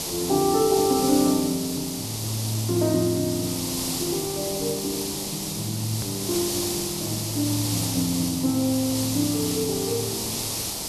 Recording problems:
hiss; SNR 3 dB
click at an edit; at 6 s

